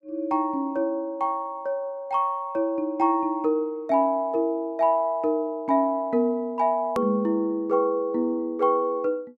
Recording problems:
hard cut with a click; at 7 s

